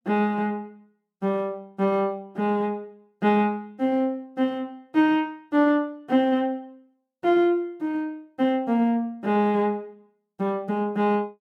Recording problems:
none

